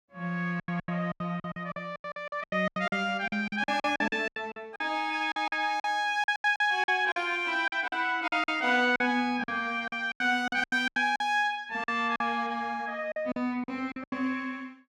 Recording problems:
packet loss; 16% of the sound replaced, filled with silence

